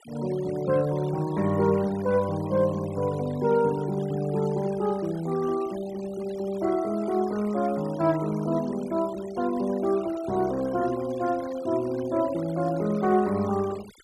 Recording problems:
denoising artefacts; signal-to-artefact ratio 19 dB

